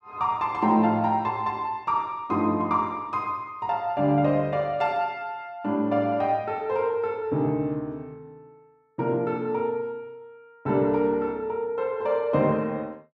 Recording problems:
none

